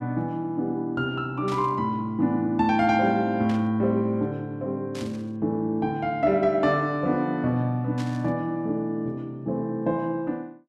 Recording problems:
static burst; 4 times, first at 1.5 s; peak -10 dB vs average level

